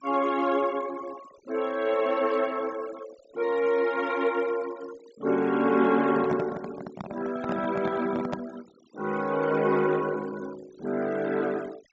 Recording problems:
treble cut off; nothing above 7.7 kHz
denoising artefacts; signal-to-artefact ratio 18 dB
microphone handling noise; from 6 to 8.5 s; peak -1 dB vs average level

